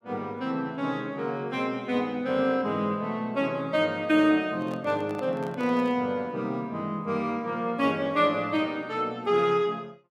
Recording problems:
microphone handling noise; from 4.5 to 6 s; peak -11 dB vs average level

